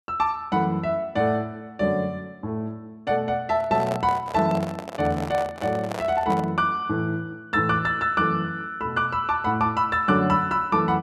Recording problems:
handling noise; from 3.5 to 6.5 s; peak -4 dB vs average level

